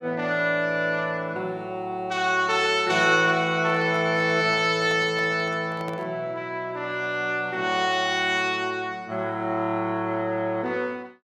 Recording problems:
handling noise; from 3.5 to 6 s; peak -9 dB vs average level

